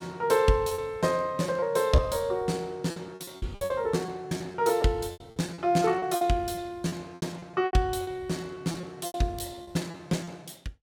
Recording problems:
packet loss; 15% of the sound replaced, filled with repeated pitch periods

